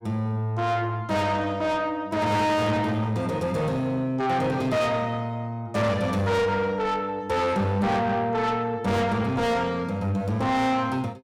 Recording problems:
distortion; soft clipping, signal-to-distortion ratio 6 dB

